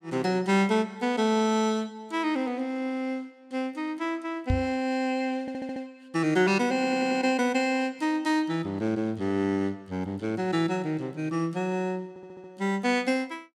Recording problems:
microphone bump; at 4.5 s; peak +4 dB vs average level
audio stuttering; at 5.5 s, at 6.5 s and at 12 s

